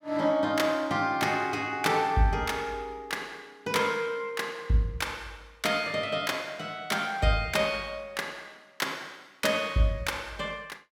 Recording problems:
none

